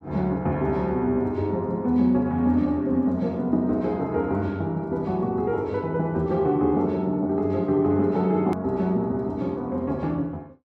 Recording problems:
click at an edit; at 8.5 s

